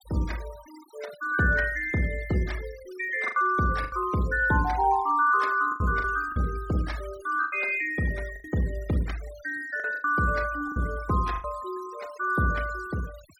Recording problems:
noise reduction artefacts; signal-to-artefact ratio 20 dB
packet loss; 6% of the sound replaced, filled with the last packet

